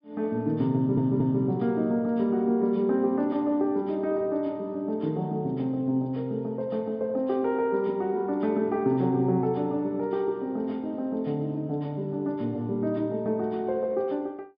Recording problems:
treble cut off; nothing above 5.5 kHz
audio stuttering; at 1 s

